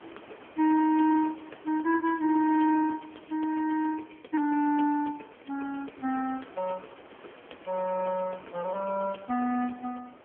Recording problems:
phone line; 220 Hz to 2.4 kHz, AMR-NB
wind on the microphone; below 1.6 kHz, SNR 23 dB

